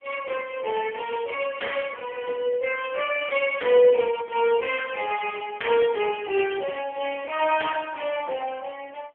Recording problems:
telephone audio; 320 Hz to 3.3 kHz, AMR-NB

